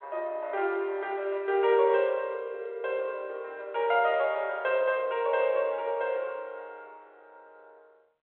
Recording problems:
telephone audio; 340 Hz to 3.5 kHz, G.726

